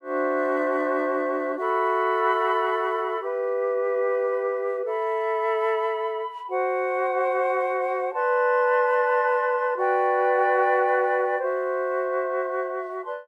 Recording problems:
none

